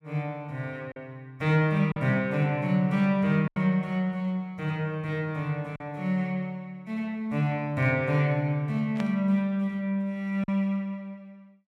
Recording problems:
lost packets; 2% of the sound replaced, filled with silence
static burst; at 9 s; peak -8 dB vs average level

